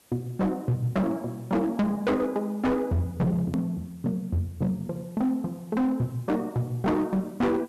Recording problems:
distorted audio; hard clipping, signal-to-distortion ratio 8 dB
hiss; slope -3 dB per octave, SNR 29 dB
click at an edit; at 3.5 s

